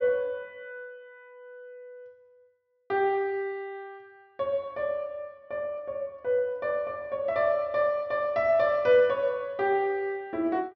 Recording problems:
treble missing; nothing above 6.4 kHz

